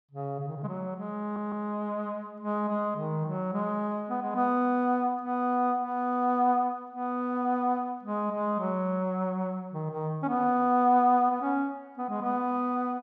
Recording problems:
audio stuttering; at 1 s

